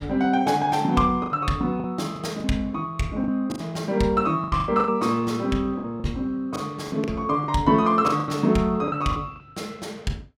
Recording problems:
packet loss; 10% of the sound replaced, filled with the last packet

